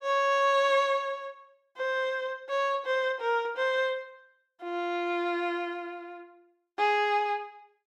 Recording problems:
none

